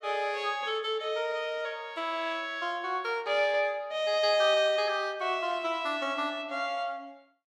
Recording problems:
none

